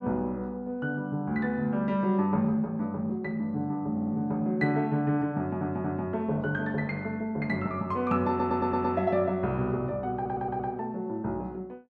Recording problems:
stutter; 4 times, first at 4 s

